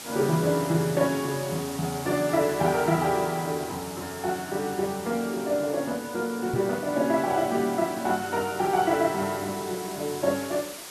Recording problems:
hiss; slope -1 dB per octave, SNR 13 dB
microphone thump; at 6.5 s; peak -1 dB vs average level

